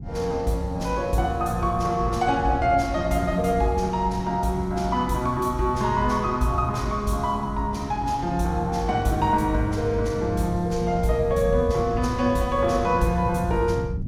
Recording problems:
wind on the microphone; below 160 Hz, SNR 11 dB

